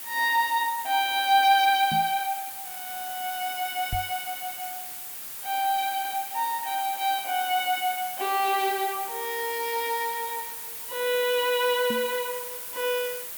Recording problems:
background hiss; slope 0 dB per octave, SNR 8 dB
microphone bump; at 2 s, at 4 s and at 12 s; peak -3 dB vs average level

